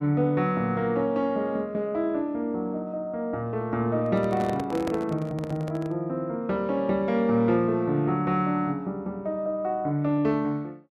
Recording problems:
handling noise; from 4 to 6 s; peak -3 dB vs average level

